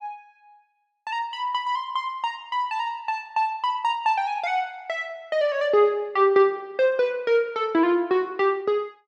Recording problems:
none

